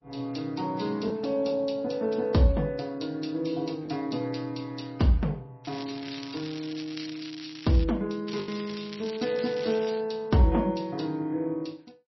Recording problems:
codec artefacts; MP2, then MP3, log-spectral distance 6 dB, nothing above 5.7 kHz
packet loss; 1% of the sound replaced, filled with the last packet
crackling; from 5.5 to 8 s and from 8.5 to 10 s; loose cable, SNR 14 dB

